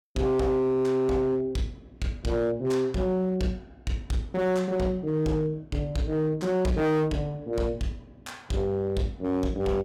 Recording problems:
distorted audio; hard clipping, signal-to-distortion ratio 12 dB

